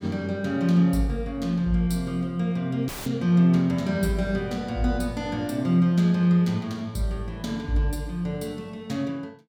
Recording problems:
audio cutting out; at 3 s; filled with static

